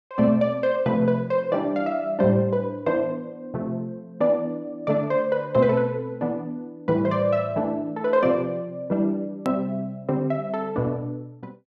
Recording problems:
edit click; at 9.5 s

